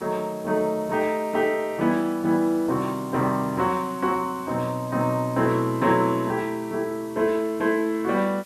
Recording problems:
background hiss; slope 0 dB per octave, SNR 23 dB

